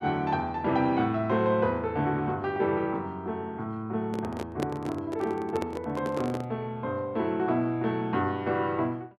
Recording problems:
microphone handling noise; from 4 to 6.5 s; peak +3 dB vs average level

